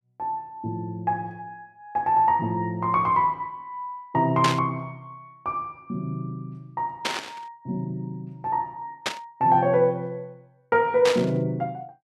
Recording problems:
burst of static; 4 times, first at 4.5 s; peak +4 dB vs average level

